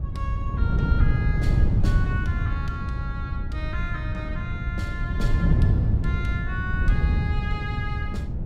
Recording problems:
rumble; below 76 Hz, SNR 3 dB
wind noise; below 140 Hz, SNR -8 dB

